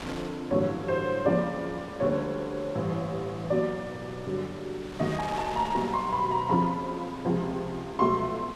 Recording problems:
wind on the microphone; below 2.9 kHz, SNR 15 dB

